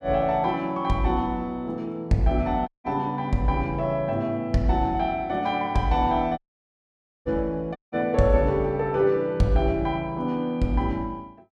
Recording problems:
dropout; at 2.5 s, at 6.5 s for 1 s and at 8 s

